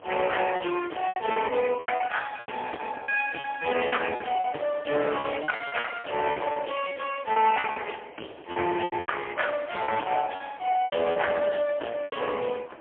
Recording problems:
phone line; 260 Hz to 3.3 kHz, AMR-NB, then MP3
distorted audio; hard clipping, uneven, signal-to-distortion ratio 9 dB
wind on the microphone; below 950 Hz, SNR 20 dB
lost packets; 12% of the sound replaced, filled with repeated pitch periods

